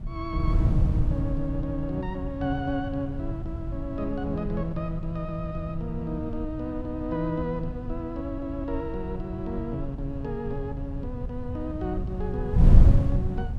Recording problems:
wind on the microphone; below 110 Hz, SNR -3 dB

